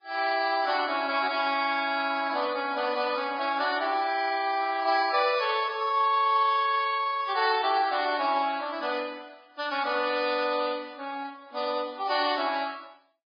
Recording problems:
lossy codec; Vorbis, then MP3, log-spectral distance 5 dB, nothing above 4.8 kHz

